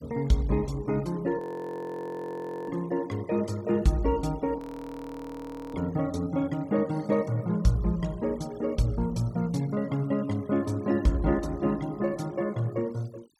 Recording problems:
noise reduction artefacts; signal-to-artefact ratio 24 dB
frozen audio; at 1.5 s for 1.5 s and at 4.5 s for 1 s

